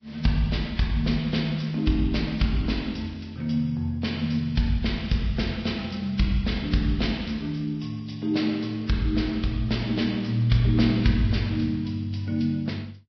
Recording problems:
lossy compression; Vorbis, log-spectral distance 5 dB, nothing above 5.3 kHz

